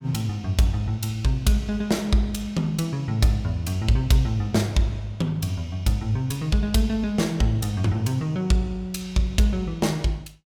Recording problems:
none

